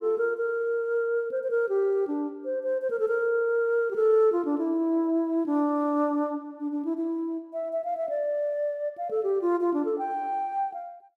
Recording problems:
none

